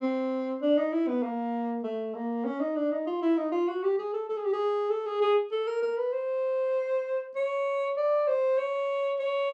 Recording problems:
none

